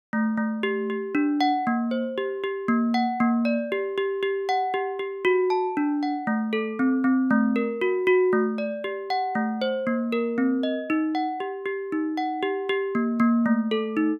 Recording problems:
none

